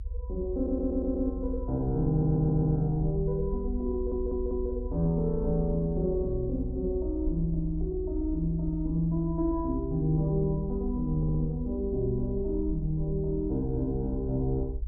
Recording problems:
low-frequency rumble; below 60 Hz, strongest tone 36 Hz, SNR 7 dB
stutter; 4 times, first at 0.5 s

